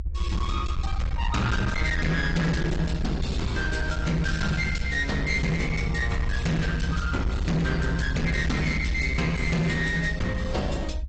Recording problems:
treble cut off; nothing above 7.8 kHz
codec artefacts; AAC, log-spectral distance 3 dB
distorted audio; hard clipping, uneven, signal-to-distortion ratio 7 dB
rumble; below 74 Hz, SNR 3 dB

